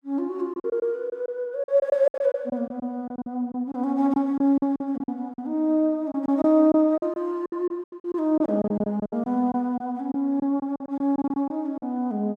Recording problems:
packet loss; 13% of the sound replaced, filled with silence

